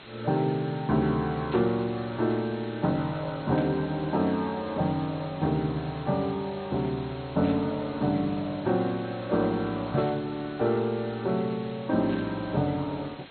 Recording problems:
lossy codec; MP2, log-spectral distance 13 dB, nothing above 4.2 kHz
hiss; SNR 18 dB
static burst; 5 times, first at 1.5 s; peak -10 dB vs average level

